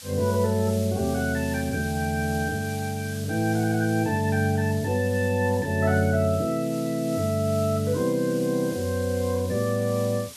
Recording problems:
hiss; SNR 16 dB

